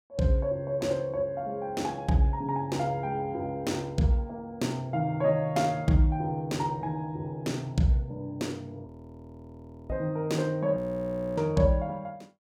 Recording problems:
audio freezing; at 9 s for 1 s and at 11 s for 0.5 s

